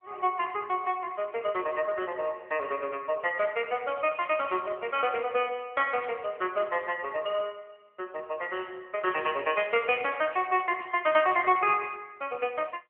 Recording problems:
phone line; 280 Hz to 3.2 kHz, AMR-NB

